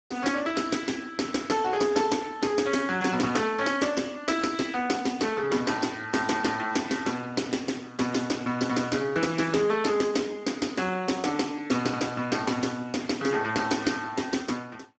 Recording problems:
lossy compression; Speex, log-spectral distance 6 dB, nothing above 7.3 kHz

